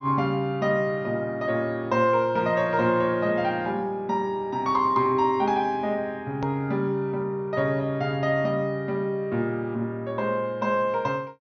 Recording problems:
low-pass filter; nothing above 6.5 kHz
click at an edit; at 6.5 s

